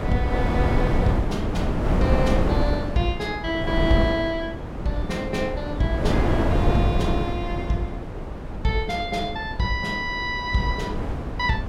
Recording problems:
wind on the microphone; below 370 Hz, SNR 0 dB

